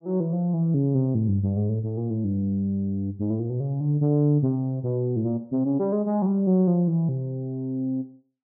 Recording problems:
none

